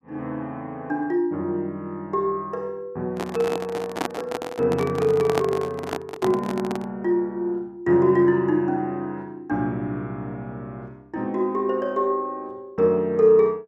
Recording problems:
microphone handling noise; from 3 to 7 s; peak +3 dB vs average level

